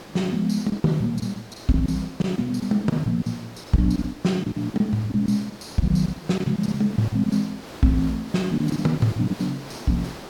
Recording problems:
background hiss; slope -5 dB per octave, SNR 16 dB
lost packets; 11% of the sound replaced, filled with silence

